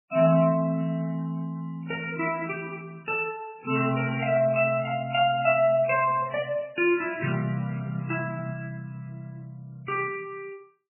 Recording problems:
codec artefacts; MP3, then MP3, log-spectral distance 3 dB, nothing above 2.4 kHz

